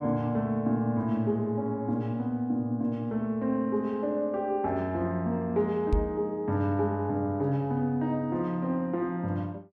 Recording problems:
microphone bump; at 6 s; peak +6 dB vs average level

